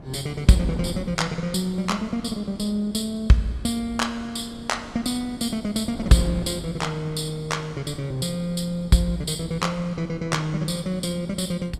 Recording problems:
wind on the microphone; below 350 Hz, SNR 15 dB

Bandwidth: 14.5 kHz